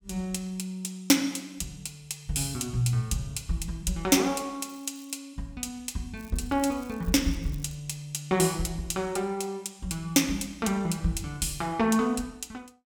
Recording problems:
crackling; at 4.5 s and from 6 to 8 s; loose cable, SNR 24 dB

